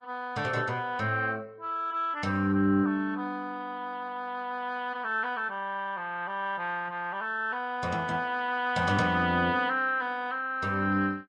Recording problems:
lossy codec; Vorbis, log-spectral distance 2 dB, nothing above 10.1 kHz

